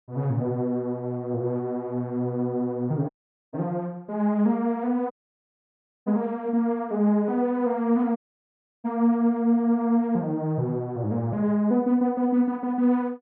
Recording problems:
audio cutting out; at 3 s, at 5 s for 1 s and at 8 s for 0.5 s

